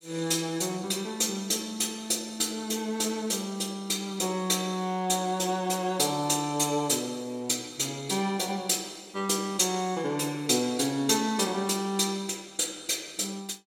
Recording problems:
none

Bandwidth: 16 kHz